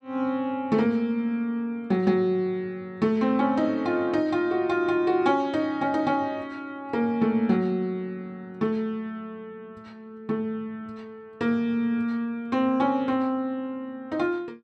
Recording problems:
none

